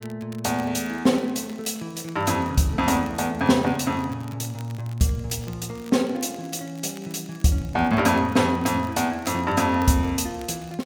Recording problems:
crackling; vinyl, SNR 25 dB

